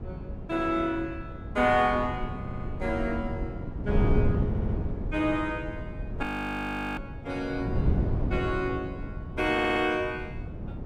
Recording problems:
wind on the microphone; below 190 Hz, SNR 4 dB
audio stuttering; at 2.5 s, at 4.5 s and at 9.5 s
frozen audio; at 6 s for 0.5 s

